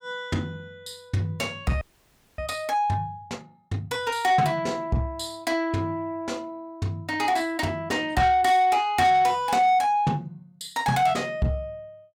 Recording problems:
distorted audio; soft clipping, signal-to-distortion ratio 10 dB
frozen audio; at 2 s for 0.5 s

